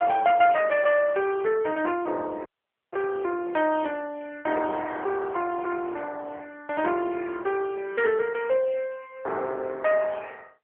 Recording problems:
phone line; 340 Hz to 2.8 kHz, AMR-NB
dropout; at 2.5 s

